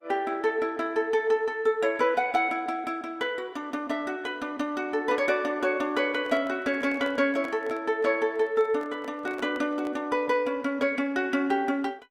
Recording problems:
codec artefacts; Opus, log-spectral distance 2 dB, nothing above 19 kHz
handling noise; from 6 to 10 s; peak -9 dB vs average level

